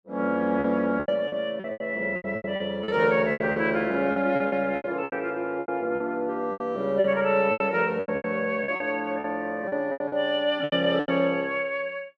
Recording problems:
packet loss; 15% of the sound replaced, filled with repeated pitch periods

